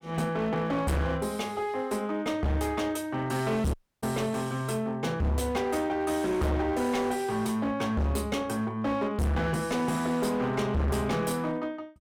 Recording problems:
distorted audio; hard clipping, uneven, signal-to-distortion ratio 6 dB
audio cutting out; at 3.5 s

